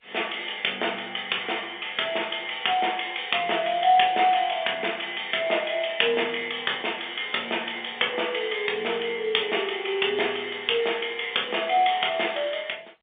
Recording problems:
phone line; 320 Hz to 3.6 kHz, G.711

